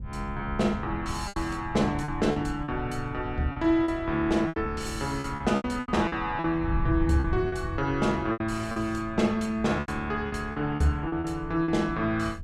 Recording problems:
wind noise; below 110 Hz, SNR 10 dB
packet loss; 10% of the sound replaced, filled with repeated pitch periods

